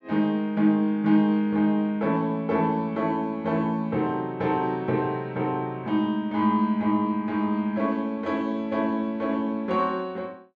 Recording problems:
none

